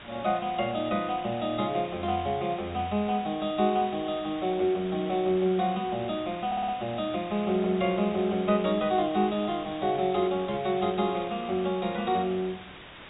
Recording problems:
treble cut off; nothing above 4 kHz
hiss; SNR 16 dB
stutter; at 6.5 s

